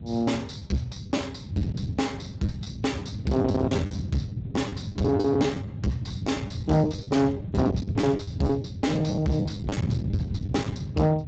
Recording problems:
codec artefacts; Speex, log-spectral distance 3 dB, nothing above 7.6 kHz
distorted audio; soft clipping, signal-to-distortion ratio 5 dB
wind on the microphone; below 260 Hz, SNR 5 dB
lost packets; 12% of the sound replaced, filled with the last packet

